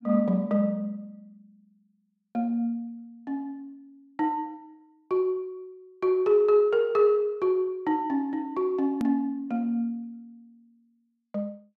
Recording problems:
edit click; at 9 s

